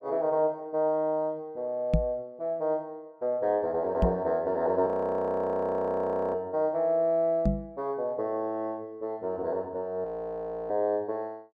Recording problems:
microphone bump; at 2 s, at 4 s and at 7.5 s; peak +8 dB vs average level
frozen audio; at 5 s for 1.5 s and at 10 s for 0.5 s

